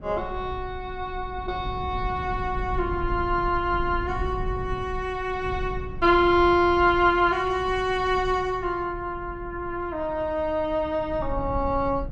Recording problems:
rumble; below 100 Hz, SNR 12 dB

